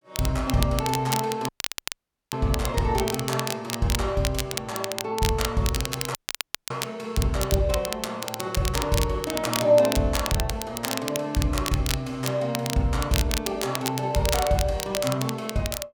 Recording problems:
crackling; vinyl, SNR 6 dB
audio cutting out; at 1.5 s for 1 s and at 6 s for 0.5 s

